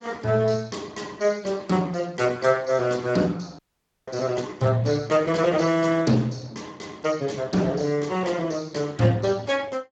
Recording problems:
lossy compression; Speex, log-spectral distance 4 dB, nothing above 7.3 kHz
dropout; at 3.5 s

